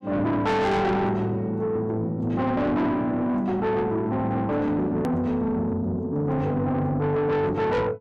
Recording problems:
distortion; soft clipping, signal-to-distortion ratio 8 dB
hard cut with a click; at 5 s

